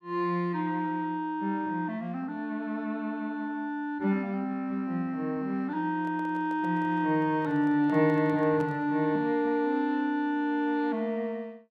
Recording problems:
microphone handling noise; from 6 to 9 s; peak -10 dB vs average level

